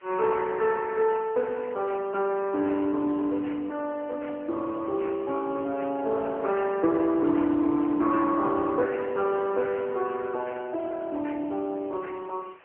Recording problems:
phone line; 240 Hz to 3.1 kHz, AMR-NB
hiss; SNR 27 dB

